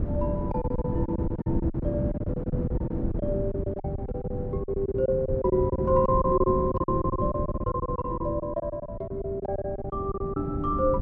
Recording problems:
wind noise; below 240 Hz, SNR 2 dB
packet loss; 16% of the sound replaced, filled with silence

